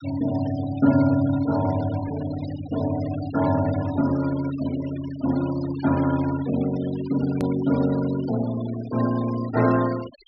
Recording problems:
treble cut off; nothing above 5.5 kHz
denoising artefacts; signal-to-artefact ratio 16 dB
click at an edit; at 7.5 s

